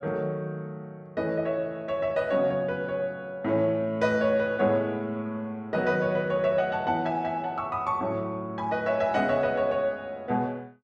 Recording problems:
none

